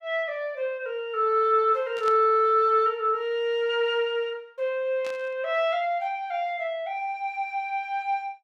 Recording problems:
burst of static; at 2 s and at 5 s; peak -10 dB vs average level

